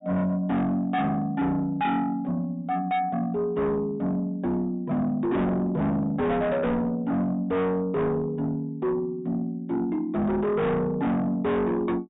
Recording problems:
treble missing; nothing above 4 kHz
distortion; soft clipping, signal-to-distortion ratio 7 dB

